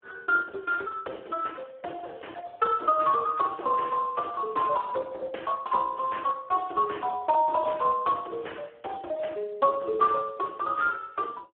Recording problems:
telephone audio; 300 Hz to 2.1 kHz, Speex

